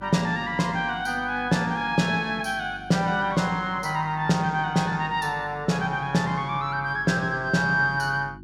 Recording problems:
hum; 50 Hz, harmonics up to 350 Hz, SNR 21 dB

